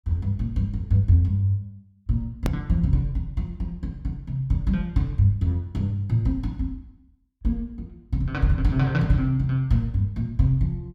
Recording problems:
edit click; at 2.5 s

